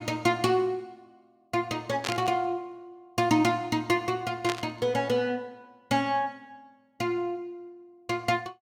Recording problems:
burst of static; at 2 s and at 4.5 s; peak +1 dB vs average level

